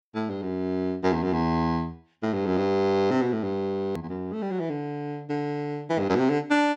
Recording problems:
edit click; at 4 s

